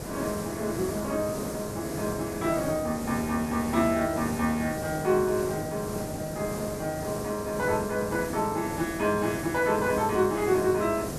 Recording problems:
background hiss; SNR 7 dB

